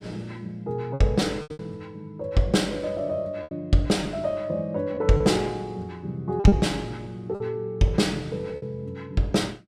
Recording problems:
packet loss; 6% of the sound replaced, filled with repeated pitch periods

